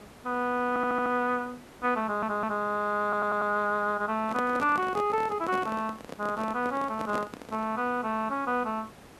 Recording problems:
hiss; slope -5 dB per octave, SNR 21 dB
audio stuttering; at 0.5 s, at 2 s and at 3 s
handling noise; from 4 to 7.5 s; peak -3 dB vs average level

